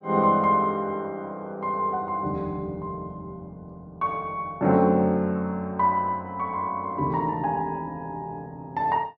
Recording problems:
none

